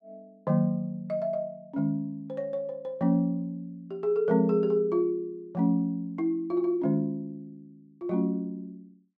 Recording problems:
none

